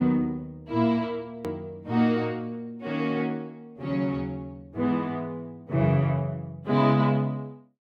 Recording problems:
hard cut with a click; at 1.5 s

